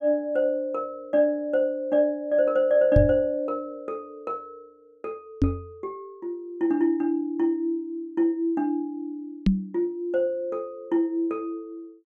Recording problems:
microphone thump; at 3 s, at 5.5 s and at 9.5 s; peak +8 dB vs average level

